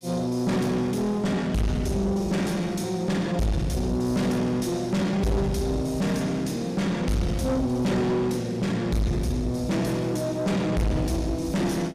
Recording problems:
distortion; soft clipping, signal-to-distortion ratio 6 dB

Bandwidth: 15 kHz